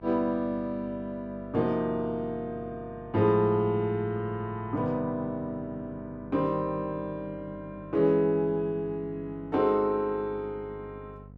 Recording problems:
hum; 50 Hz, harmonics up to 750 Hz, SNR 19 dB

